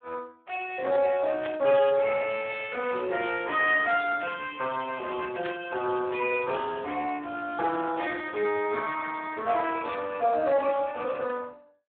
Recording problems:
phone line; 320 Hz to 3.4 kHz, Speex
burst of static; at 1.5 s and at 5.5 s; peak -5 dB vs average level

